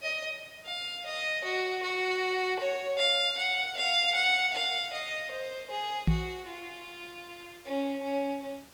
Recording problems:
hiss; slope -2 dB per octave, SNR 25 dB
knock on the microphone; at 6 s; peak +7 dB vs average level

